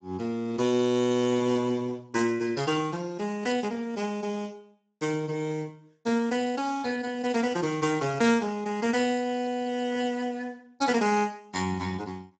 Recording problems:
codec artefacts; Speex, log-spectral distance 4 dB, nothing above 7.6 kHz

